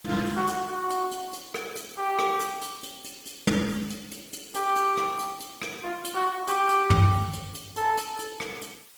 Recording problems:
lossy compression; Opus, log-spectral distance 7 dB
hiss; slope +1 dB per octave, SNR 23 dB

